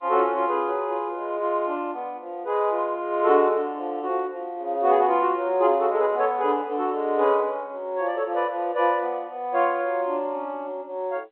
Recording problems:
phone line; 260 Hz to 3.5 kHz, G.711

